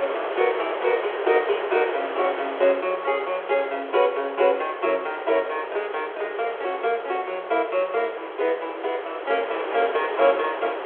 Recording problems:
telephone audio; 340 Hz to 3.5 kHz, G.726
wind on the microphone; below 1.3 kHz, SNR 7 dB

